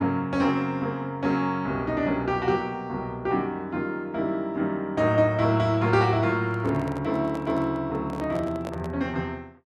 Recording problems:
handling noise; from 6.5 to 9 s; peak -6 dB vs average level

